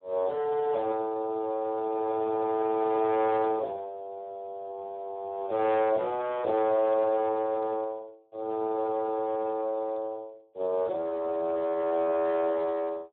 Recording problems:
phone line; 280 Hz to 3.5 kHz, Speex

